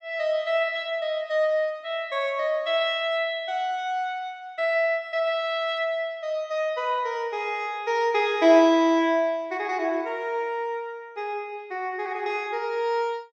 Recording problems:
treble missing; nothing above 8 kHz

